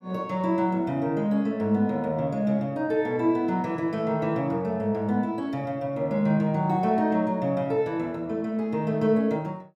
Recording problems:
none

